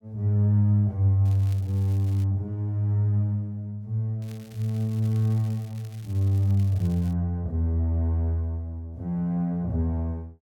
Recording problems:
crackle; from 1 to 2 s and from 4 to 7 s; loose cable, SNR 27 dB

